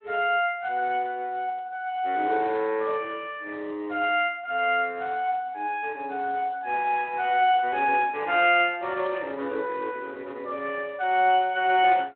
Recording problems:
telephone audio; 260 Hz to 3.3 kHz, Speex

